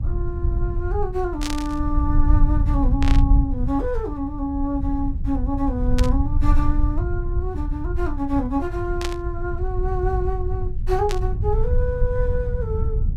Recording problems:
rumble; below 74 Hz, SNR -2 dB
burst of static; 5 times, first at 1.5 s; peak +2 dB vs average level

